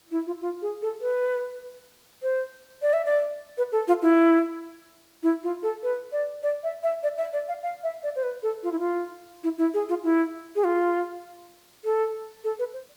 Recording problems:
background hiss; slope -1 dB per octave, SNR 30 dB

